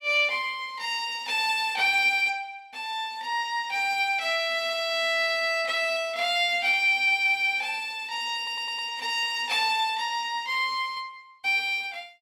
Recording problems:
stutter; at 8.5 s

